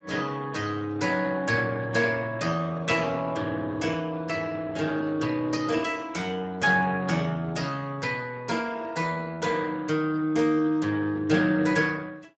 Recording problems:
codec artefacts; Speex, log-spectral distance 4 dB, nothing above 7.6 kHz

